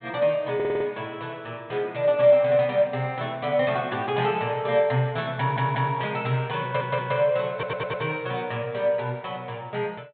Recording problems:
treble missing; nothing above 4 kHz
stutter; 4 times, first at 0.5 s

